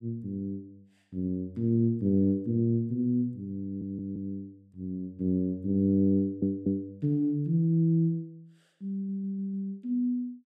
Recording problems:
audio stuttering; at 3.5 s, at 6 s and at 9 s

